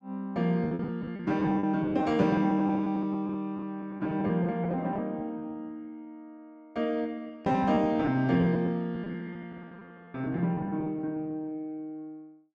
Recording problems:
packet loss; 16% of the sound replaced, filled with repeated pitch periods

